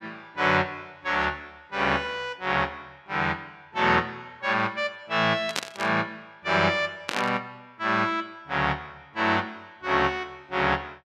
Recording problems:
burst of static; at 5.5 s and at 7 s; peak +3 dB vs average level

